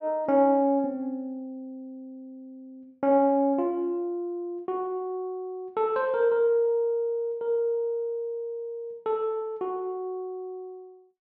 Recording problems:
none

